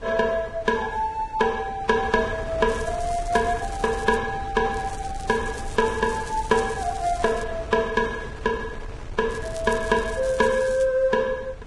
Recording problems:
lossy compression; Vorbis, log-spectral distance 3 dB, nothing above 10.1 kHz
wind noise; below 230 Hz, SNR 13 dB
crackle; from 2.5 to 4 s, from 4.5 to 7.5 s and from 9.5 to 11 s; loose cable, SNR 19 dB

